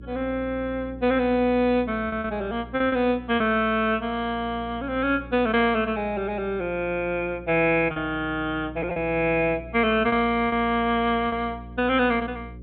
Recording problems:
low-pass filter; nothing above 4 kHz
electrical hum; 60 Hz, harmonics up to 540 Hz, SNR 18 dB
packet loss; 3% of the sound replaced, filled with repeated pitch periods

